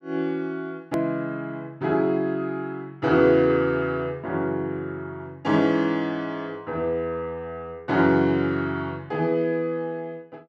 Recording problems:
hard cut with a click; at 1 s

